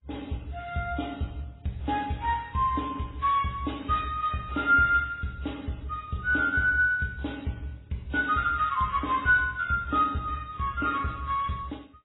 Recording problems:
codec artefacts; MP3, then AAC, log-spectral distance 4 dB, nothing above 3.8 kHz

